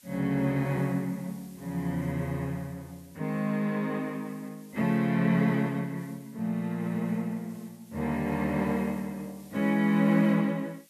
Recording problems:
hiss; slope +3 dB per octave, SNR 27 dB

